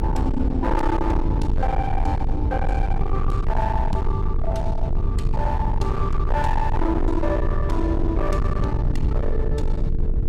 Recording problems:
distortion; hard clipping, signal-to-distortion ratio 7 dB
hum; 50 Hz, harmonics up to 450 Hz, SNR 11 dB
rumble; below 90 Hz, strongest tone 22 Hz, SNR -1 dB

